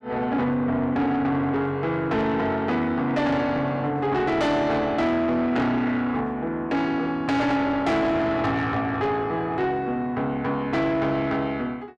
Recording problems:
distortion; soft clipping, signal-to-distortion ratio 10 dB

